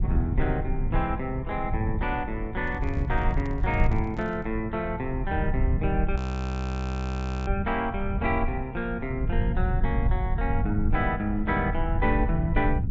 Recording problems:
treble missing; nothing above 8 kHz
rumble; below 100 Hz, SNR 0 dB
handling noise; from 2.5 to 4.5 s; peak -6 dB vs average level
frozen audio; at 6 s for 1.5 s

